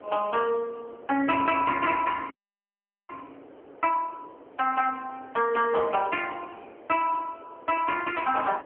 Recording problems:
telephone audio; 240 Hz to 3.2 kHz, AMR-NB
hiss; SNR 22 dB
frozen audio; at 2.5 s for 1 s

